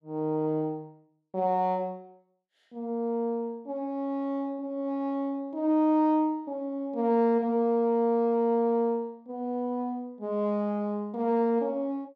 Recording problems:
none

